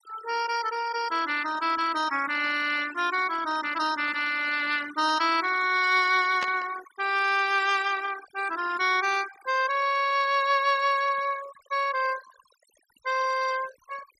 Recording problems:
denoising artefacts; signal-to-artefact ratio 15 dB
burst of static; at 6.5 s; peak -5 dB vs average level

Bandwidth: 14.5 kHz